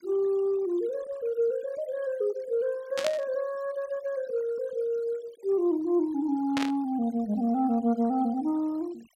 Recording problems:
noise reduction artefacts; signal-to-artefact ratio 25 dB
burst of static; at 3 s and at 6.5 s; peak 0 dB vs average level

